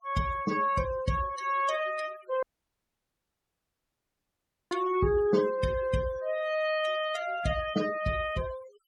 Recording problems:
noise reduction artefacts; signal-to-artefact ratio 13 dB
audio cutting out; at 2.5 s for 2.5 s

